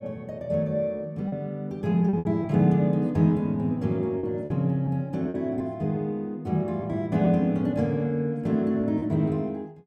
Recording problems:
lost packets; 5% of the sound replaced, filled with repeated pitch periods

